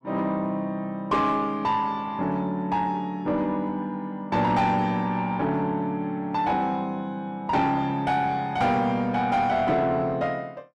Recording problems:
distortion; soft clipping, signal-to-distortion ratio 11 dB

